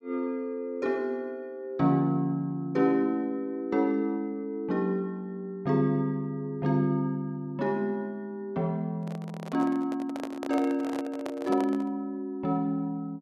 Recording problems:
microphone handling noise; from 9 to 12 s; peak -2 dB vs average level

